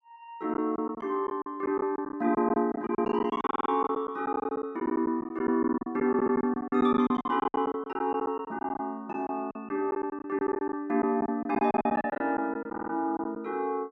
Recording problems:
packet loss; 15% of the sound replaced, filled with silence
audio stuttering; at 3.5 s, at 6 s and at 13 s

